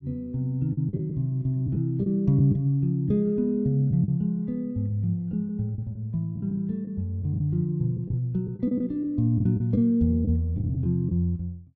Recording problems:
lost packets; 7% of the sound replaced, filled with the last packet

